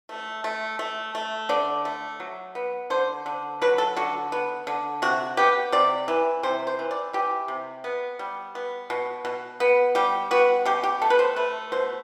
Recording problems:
none

